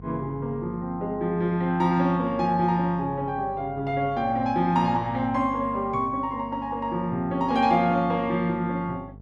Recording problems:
mains hum; 50 Hz, harmonics up to 700 Hz, SNR 19 dB

